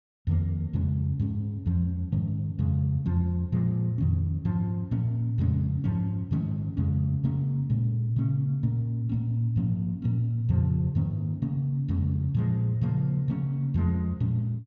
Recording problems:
none

